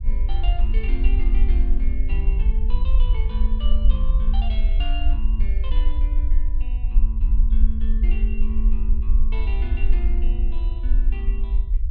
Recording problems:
rumble; below 48 Hz, SNR -14 dB

